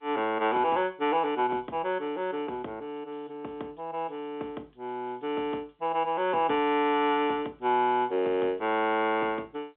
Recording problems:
telephone audio; 300 Hz to 3.5 kHz, G.711

